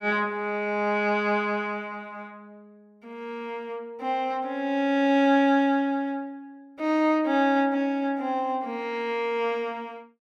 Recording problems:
none

